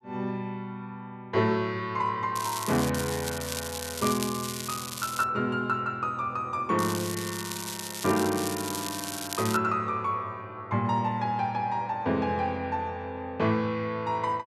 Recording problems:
crackling; at 2.5 s, from 3 to 5 s and from 7 to 9.5 s; loose cable, SNR 6 dB

